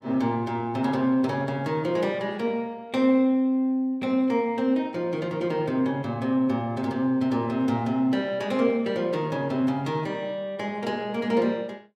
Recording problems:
none

